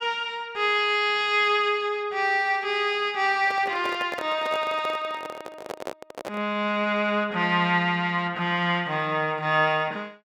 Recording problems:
microphone handling noise; from 3.5 to 6.5 s; peak -5 dB vs average level

